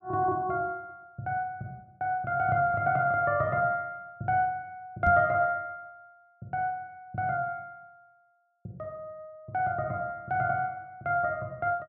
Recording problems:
microphone bump; at 5 s; peak +2 dB vs average level

